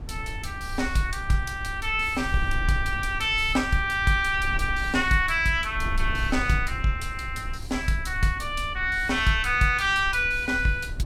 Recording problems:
wind on the microphone; below 72 Hz, SNR 11 dB

